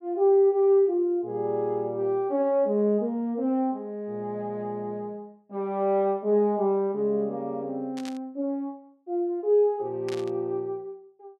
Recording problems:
static burst; at 8 s and at 10 s; peak -11 dB vs average level

